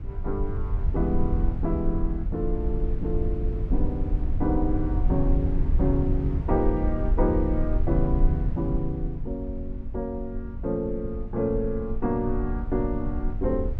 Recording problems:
rumble; below 66 Hz, SNR 1 dB

